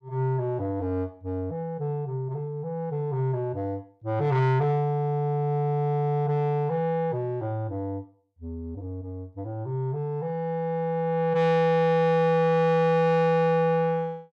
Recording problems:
distortion; soft clipping, signal-to-distortion ratio 11 dB

